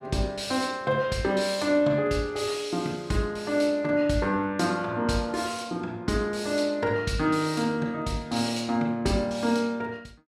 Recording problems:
none

